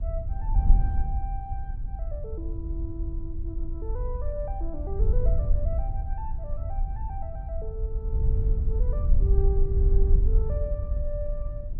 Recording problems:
wind noise; below 60 Hz, SNR -10 dB

